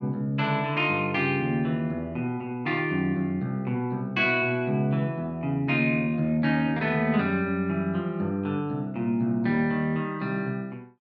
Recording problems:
none

